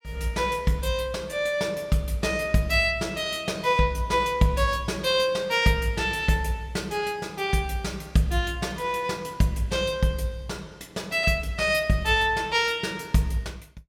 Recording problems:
none

